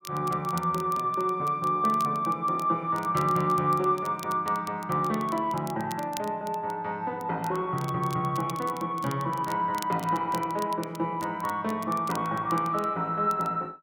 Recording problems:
crackle; vinyl, SNR 19 dB

